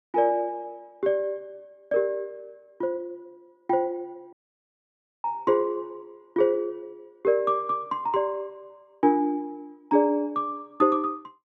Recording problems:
dropout; at 4.5 s for 1 s

